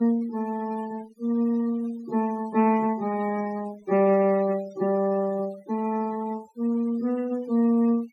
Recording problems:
noise reduction artefacts; signal-to-artefact ratio 20 dB

